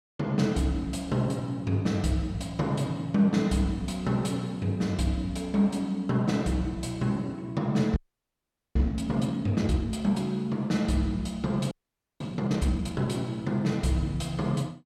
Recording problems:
frozen audio; at 8 s for 1 s and at 12 s

